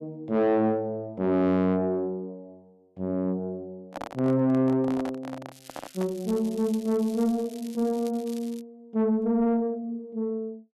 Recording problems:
distorted audio; soft clipping, signal-to-distortion ratio 10 dB
microphone handling noise; from 4 to 6 s; peak -5 dB vs average level
crackling; from 5.5 to 8.5 s; loose cable, SNR 22 dB

